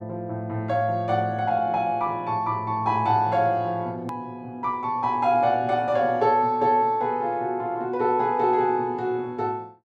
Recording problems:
hard cut with a click; at 4 s

